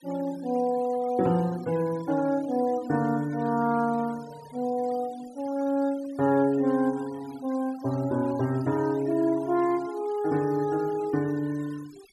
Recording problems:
noise reduction artefacts; signal-to-artefact ratio 21 dB

